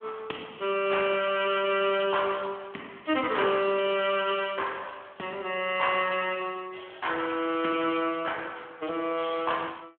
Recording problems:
telephone audio; 260 Hz to 3.4 kHz, Speex

